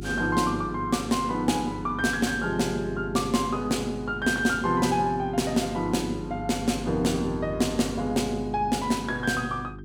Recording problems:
hum; 50 Hz, harmonics up to 400 Hz, SNR 12 dB

